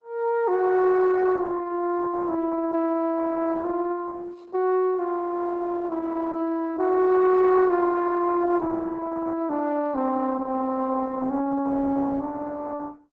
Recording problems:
lossy codec; Opus, log-spectral distance 3 dB

